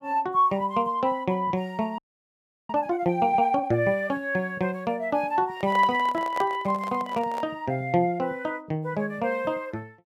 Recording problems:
frozen audio; at 2 s for 0.5 s
microphone handling noise; from 5.5 to 7.5 s; peak -4 dB vs average level

